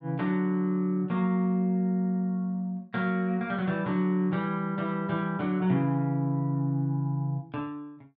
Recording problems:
none

